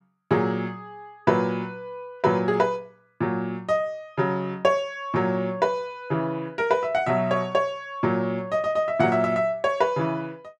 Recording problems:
none

